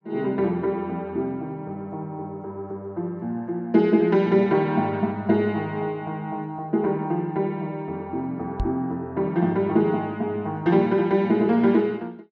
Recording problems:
microphone bump; at 8.5 s; peak 0 dB vs average level

